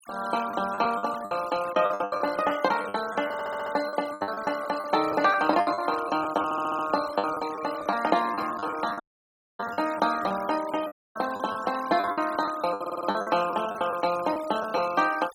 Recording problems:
denoising artefacts; signal-to-artefact ratio 16 dB
lost packets; 14% of the sound replaced, filled with the last packet
stutter; at 3.5 s, at 6.5 s and at 13 s
audio cutting out; at 9 s for 0.5 s and at 11 s

